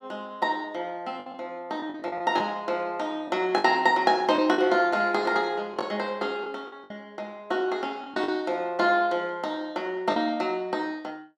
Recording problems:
packet loss; 6% of the sound replaced, filled with the last packet

